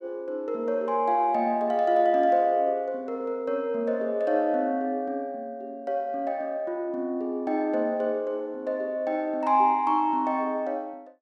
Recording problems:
none

